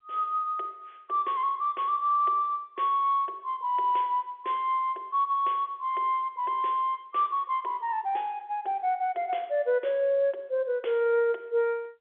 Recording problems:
phone line; 340 Hz to 3.5 kHz, G.711

